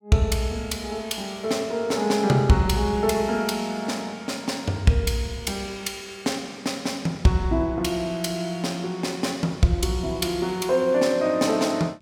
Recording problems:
none

